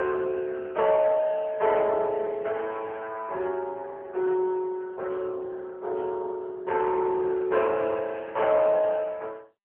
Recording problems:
phone line; 340 Hz to 2.6 kHz, AMR-NB

